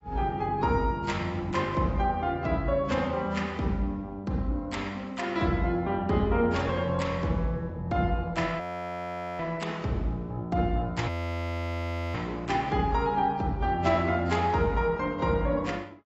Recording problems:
lossy compression; AAC, log-spectral distance 2 dB, nothing above 16.1 kHz
audio freezing; at 8.5 s for 1 s and at 11 s for 1 s

